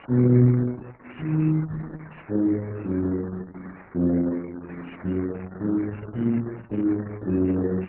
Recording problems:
codec artefacts; MP3, then Opus, log-spectral distance 16 dB
background hiss; SNR 23 dB

